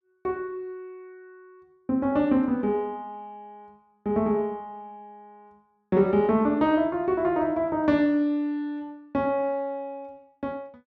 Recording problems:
none

